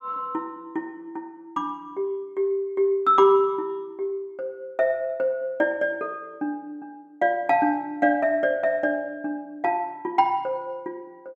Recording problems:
none

